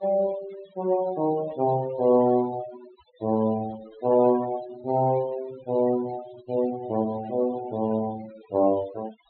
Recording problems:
low-pass filter; nothing above 4.2 kHz
denoising artefacts; signal-to-artefact ratio 19 dB

